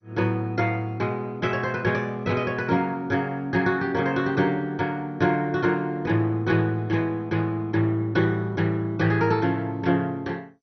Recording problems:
lossy codec; MP2, log-spectral distance 2 dB, nothing above 6 kHz

